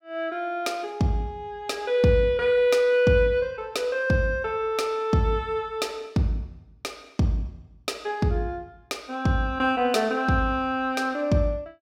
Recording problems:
none

